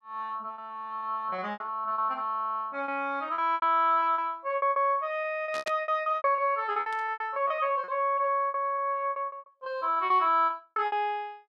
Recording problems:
packet loss; 16% of the sound replaced, filled with repeated pitch periods
burst of static; at 5.5 s and at 7 s; peak -4 dB vs average level

